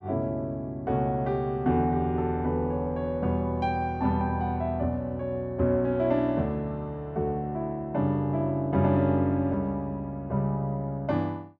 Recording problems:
none

